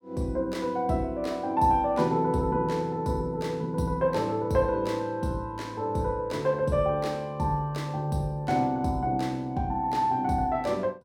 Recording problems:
none

